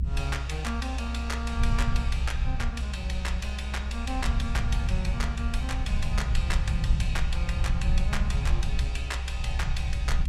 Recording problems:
low-frequency rumble; below 66 Hz, SNR -5 dB

